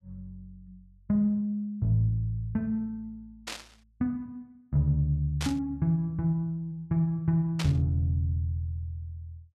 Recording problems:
burst of static; at 3.5 s, at 5.5 s and at 7.5 s; peak -2 dB vs average level

